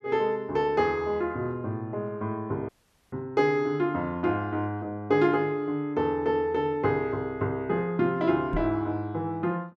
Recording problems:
dropout; at 2.5 s
knock on the microphone; at 8.5 s; peak -2 dB vs average level

